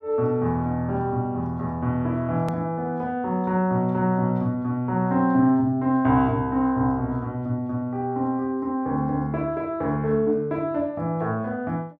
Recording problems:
click at an edit; at 2.5 s

